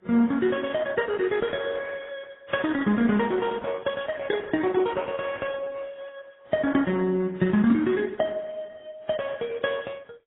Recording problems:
codec artefacts; Opus, then AAC, log-spectral distance 4 dB, nothing above 3.4 kHz

